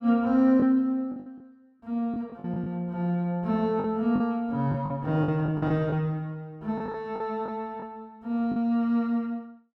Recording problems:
lost packets; 8% of the sound replaced, filled with the last packet

